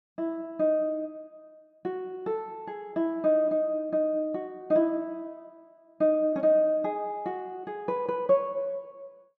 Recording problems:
none

